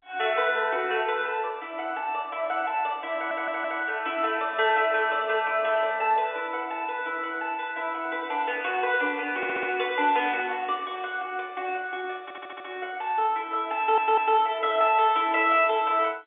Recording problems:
telephone audio; 240 Hz to 3.4 kHz, G.711
stutter; 4 times, first at 3 s

